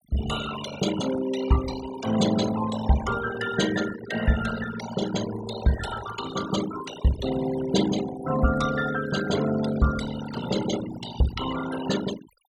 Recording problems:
denoising artefacts; signal-to-artefact ratio 9 dB

